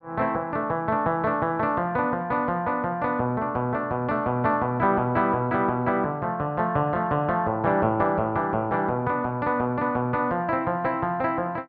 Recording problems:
none

